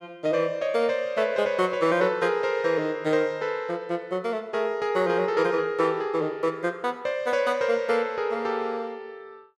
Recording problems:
none

